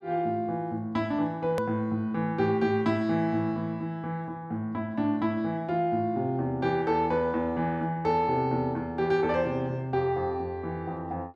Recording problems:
edit click; at 1.5 s

